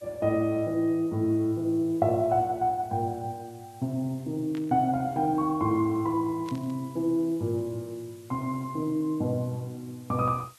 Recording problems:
background hiss; slope +2 dB per octave, SNR 27 dB
burst of static; at 4.5 s and at 6.5 s; peak -13 dB vs average level

